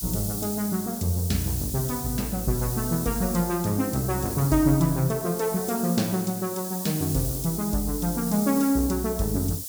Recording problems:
background hiss; SNR 7 dB

